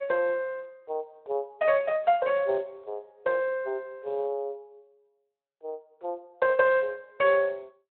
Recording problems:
phone line; 370 Hz to 3.7 kHz, Speex

